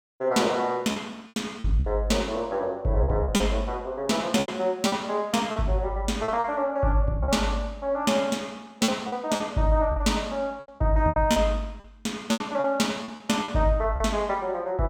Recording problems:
lost packets; 9% of the sound replaced, filled with repeated pitch periods

